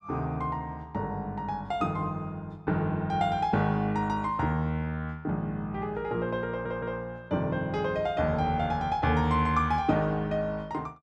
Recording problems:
stutter; at 6.5 s

